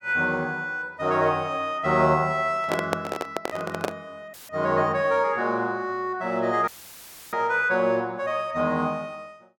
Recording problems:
microphone handling noise; from 2.5 to 4 s; peak +3 dB vs average level
audio cutting out; at 4.5 s and at 6.5 s for 0.5 s; filled with static

